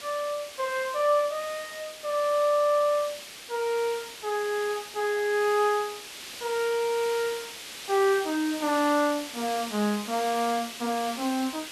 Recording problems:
hiss; slope +1 dB per octave, SNR 11 dB

